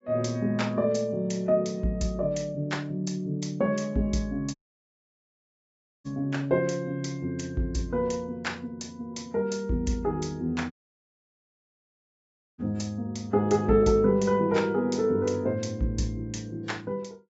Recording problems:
treble missing; nothing above 7.3 kHz
lossy compression; AAC, log-spectral distance 2 dB
audio cutting out; at 4.5 s for 1.5 s and at 11 s for 2 s

